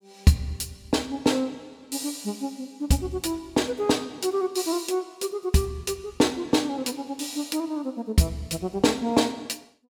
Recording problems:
none

